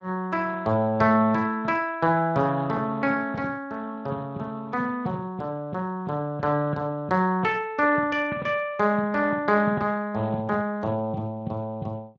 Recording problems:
codec artefacts; MP3, then Speex, log-spectral distance 2 dB

